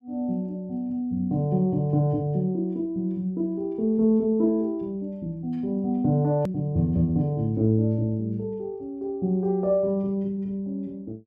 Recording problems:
edit click; at 6.5 s

